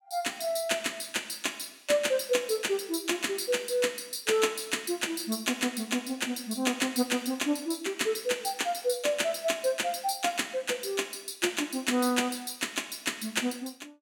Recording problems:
none

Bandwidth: 17.5 kHz